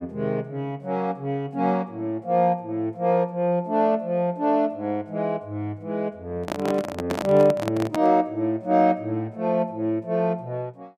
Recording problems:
microphone handling noise; from 6.5 to 8 s; peak 0 dB vs average level

